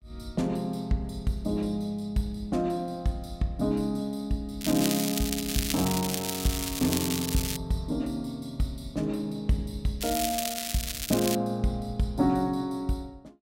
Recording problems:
crackling; from 4.5 to 7.5 s and from 10 to 11 s; loose cable, SNR 2 dB

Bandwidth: 16 kHz